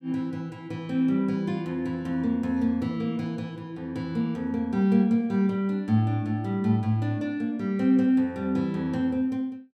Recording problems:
none

